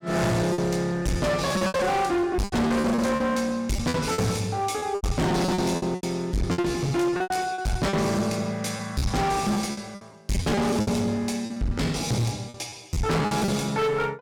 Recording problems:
distortion; hard clipping, uneven, signal-to-distortion ratio 6 dB
lost packets; 14% of the sound replaced, filled with repeated pitch periods

